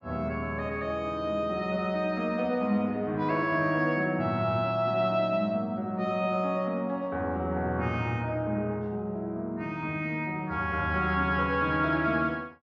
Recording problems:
none

